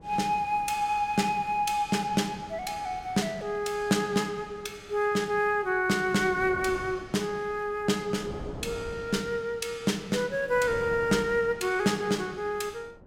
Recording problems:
wind on the microphone; below 450 Hz, SNR 18 dB

